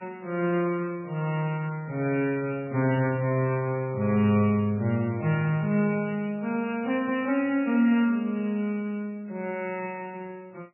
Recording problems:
codec artefacts; MP3, log-spectral distance 3 dB, nothing above 2.4 kHz

